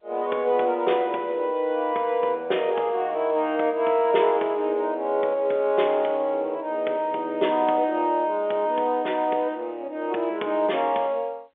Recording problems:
phone line; 280 Hz to 3.6 kHz, G.711

